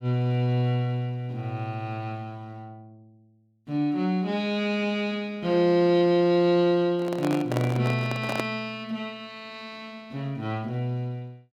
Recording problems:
handling noise; from 7 to 8.5 s; peak +1 dB vs average level

